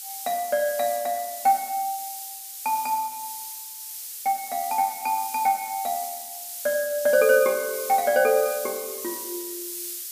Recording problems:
hiss; SNR 8 dB

